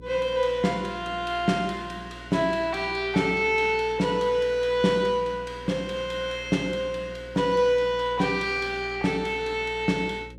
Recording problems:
mains hum; 60 Hz, harmonics up to 540 Hz, SNR 20 dB

